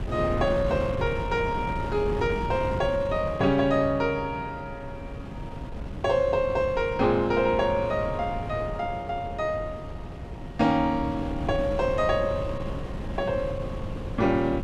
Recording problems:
wind noise; below 290 Hz, SNR 8 dB

